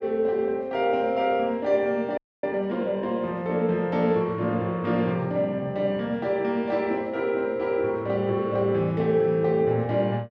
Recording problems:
audio freezing; at 2 s

